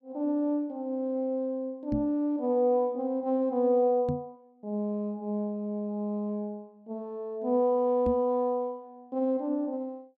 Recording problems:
microphone thump; at 2 s, at 4 s and at 8 s; peak +2 dB vs average level

